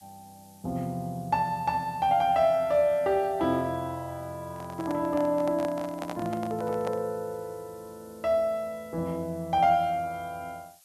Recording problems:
hiss; slope +3 dB per octave, SNR 27 dB
handling noise; from 4.5 to 7 s; peak -4 dB vs average level

